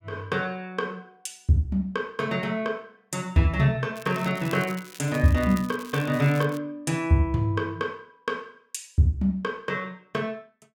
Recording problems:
crackle; from 4 to 6.5 s; loose cable, SNR 18 dB

